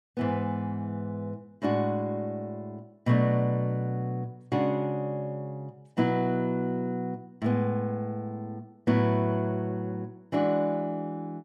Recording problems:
none

